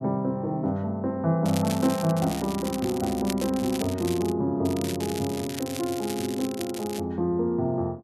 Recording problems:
crackle; from 1.5 to 4.5 s and from 4.5 to 7 s; loose cable, SNR 11 dB

